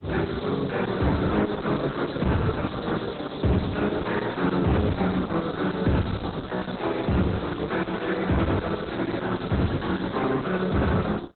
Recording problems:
lossy codec; Opus, log-spectral distance 7 dB, nothing above 4.1 kHz
distortion; soft clipping, signal-to-distortion ratio 4 dB
crackling; from 7.5 to 10 s; loose cable, SNR 18 dB

